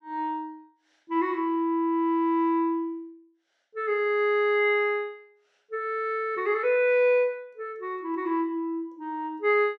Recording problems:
none

